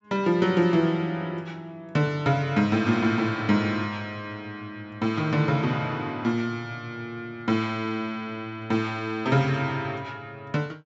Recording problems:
low-pass filter; nothing above 8 kHz

